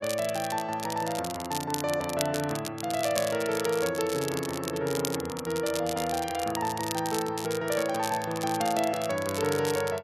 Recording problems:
crackling; vinyl, SNR 8 dB

